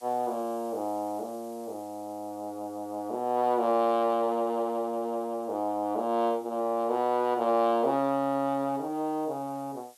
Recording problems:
background hiss; slope +2 dB per octave, SNR 27 dB

